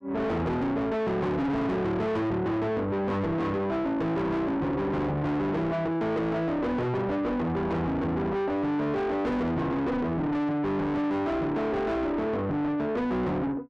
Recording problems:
distortion; soft clipping, signal-to-distortion ratio 6 dB

